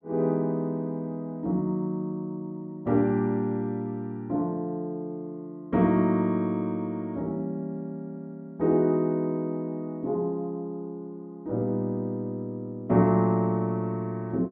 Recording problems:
none

